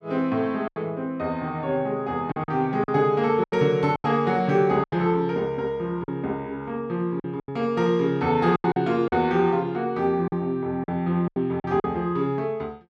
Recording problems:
packet loss; 8% of the sound replaced, filled with silence

